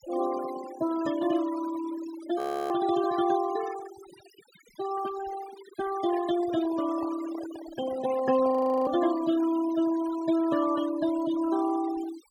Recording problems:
noise reduction artefacts; signal-to-artefact ratio 14 dB
frozen audio; at 2.5 s and at 8.5 s
handling noise; from 6 to 9 s; peak -11 dB vs average level

